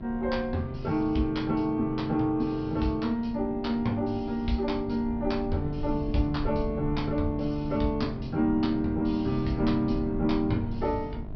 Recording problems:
treble cut off; nothing above 5.5 kHz
hum; 50 Hz, harmonics up to 1.1 kHz, SNR 16 dB
rumble; below 110 Hz, SNR 12 dB

